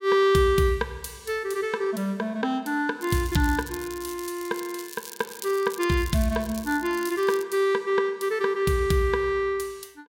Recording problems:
crackling; from 3 to 4.5 s and from 5 to 7.5 s; loose cable, SNR 15 dB

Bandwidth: 16.5 kHz